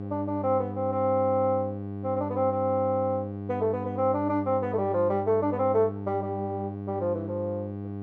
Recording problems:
hum; 50 Hz, harmonics up to 800 Hz, SNR 8 dB

